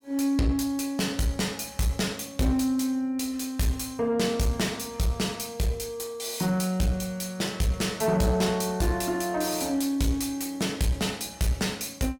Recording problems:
distortion; soft clipping, signal-to-distortion ratio 11 dB

